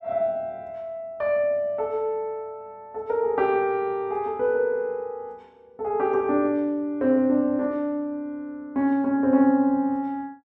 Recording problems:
none

